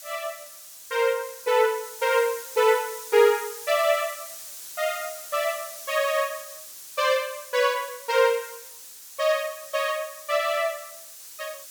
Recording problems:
hiss; SNR 14 dB

